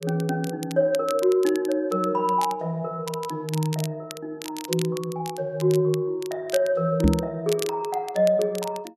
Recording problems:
crackle; vinyl, SNR 14 dB
knock on the microphone; at 7 s; peak +8 dB vs average level

